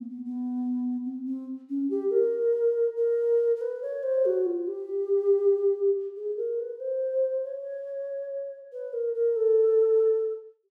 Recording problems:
none

